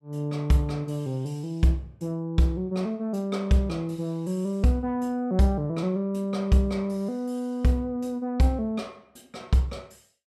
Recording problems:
none

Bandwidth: 14.5 kHz